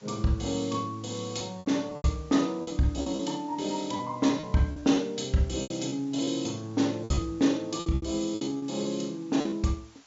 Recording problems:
treble cut off; nothing above 7.4 kHz
hiss; SNR 27 dB
lost packets; 10% of the sound replaced, filled with repeated pitch periods

